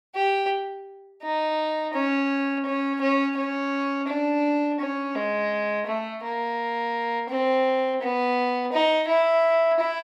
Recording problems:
none

